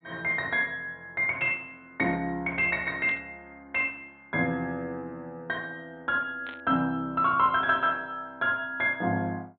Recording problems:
treble missing; nothing above 4 kHz
burst of static; at 3 s and at 6.5 s; peak -11 dB vs average level

